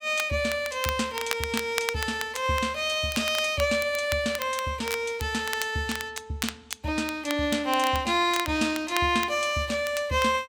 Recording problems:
crackle; vinyl, SNR 11 dB

